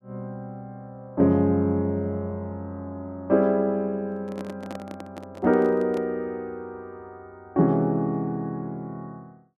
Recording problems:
microphone handling noise; from 4 to 6 s; peak -8 dB vs average level

